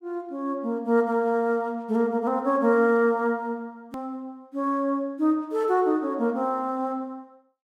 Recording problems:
click at an edit; at 4 s

